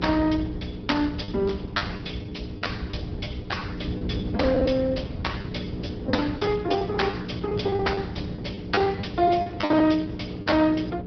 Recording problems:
low-pass filter; nothing above 5.5 kHz
lossy compression; Opus, log-spectral distance 4 dB
electrical hum; 60 Hz, harmonics up to 480 Hz, SNR 10 dB
rumble; below 170 Hz, SNR 9 dB
lost packets; 12% of the sound replaced, filled with the last packet

